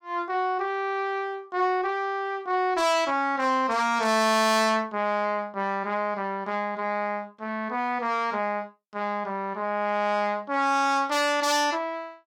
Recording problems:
distortion; soft clipping, signal-to-distortion ratio 12 dB

